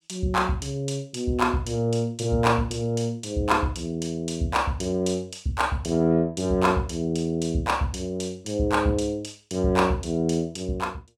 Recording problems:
none

